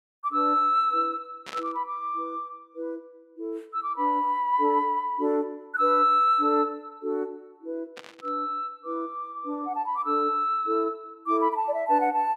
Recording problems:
static burst; at 1.5 s and at 8 s; peak -9 dB vs average level

